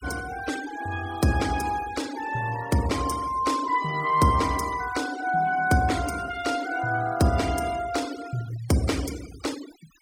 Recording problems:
denoising artefacts; signal-to-artefact ratio 15 dB

